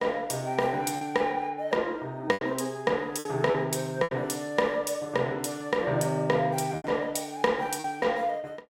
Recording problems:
lost packets; 6% of the sound replaced, filled with repeated pitch periods

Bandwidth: 16 kHz